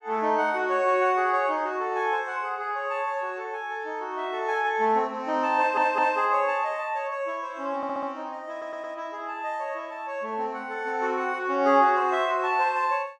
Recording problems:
audio stuttering; at 5.5 s, at 8 s and at 8.5 s

